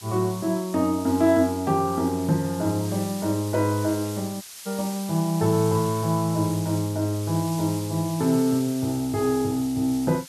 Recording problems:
hiss; slope +3 dB per octave, SNR 14 dB
audio cutting out; at 4.5 s

